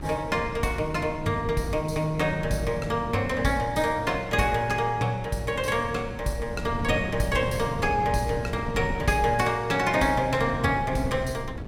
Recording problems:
wind noise; below 260 Hz, SNR 10 dB

